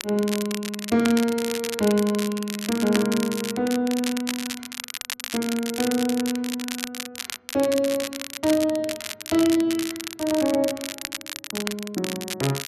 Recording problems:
crackle; vinyl, SNR 7 dB

